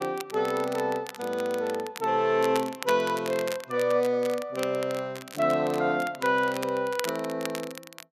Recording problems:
crackle; vinyl, SNR 14 dB

